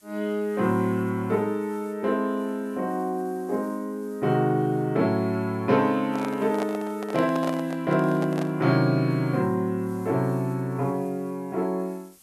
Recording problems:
background hiss; SNR 29 dB
handling noise; from 6 to 8.5 s; peak -3 dB vs average level

